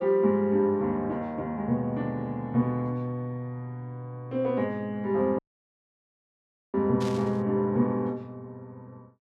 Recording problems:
dropout; at 5.5 s for 1.5 s
burst of static; at 7 s; peak -9 dB vs average level

